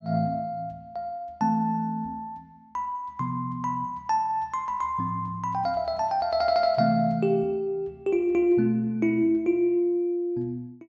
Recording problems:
none

